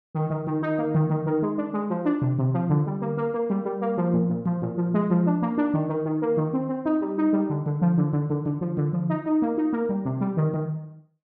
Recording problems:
none

